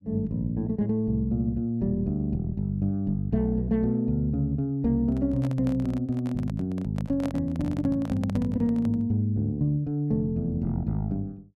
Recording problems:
handling noise; from 5 to 9 s; peak -5 dB vs average level

